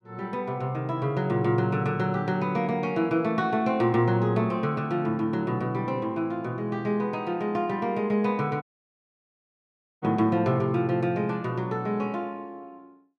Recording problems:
audio cutting out; at 8.5 s for 1.5 s

